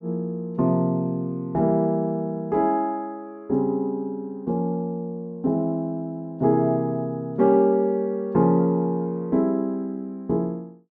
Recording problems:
none

